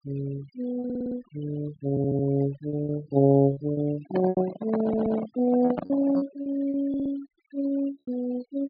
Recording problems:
low-pass filter; nothing above 4.8 kHz
noise reduction artefacts; signal-to-artefact ratio 17 dB
lost packets; 8% of the sound replaced, filled with repeated pitch periods
audio stuttering; 4 times, first at 1 s
handling noise; from 4 to 6.5 s; peak 0 dB vs average level

